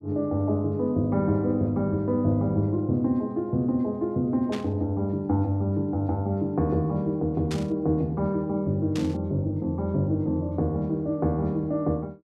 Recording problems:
static burst; at 4.5 s, at 7.5 s and at 9 s; peak -6 dB vs average level

